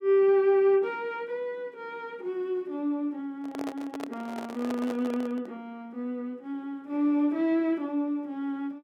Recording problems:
handling noise; from 3.5 to 5.5 s; peak -4 dB vs average level

